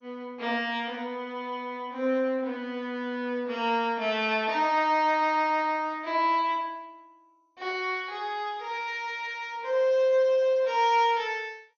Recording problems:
codec artefacts; MP2, log-spectral distance 2 dB, nothing above 6.5 kHz

